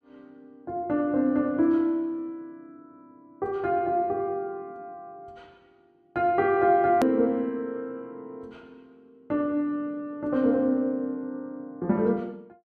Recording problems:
edit click; at 7 s

